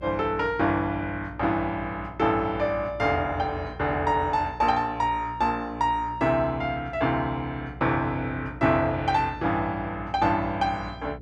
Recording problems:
hum; 60 Hz, harmonics up to 600 Hz, SNR 17 dB

